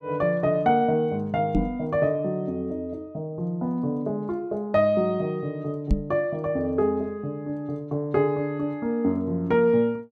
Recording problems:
microphone bump; at 1.5 s and at 6 s; peak +6 dB vs average level

